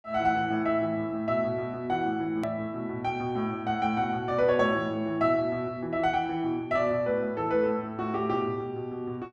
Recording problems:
hard cut with a click; at 2.5 s

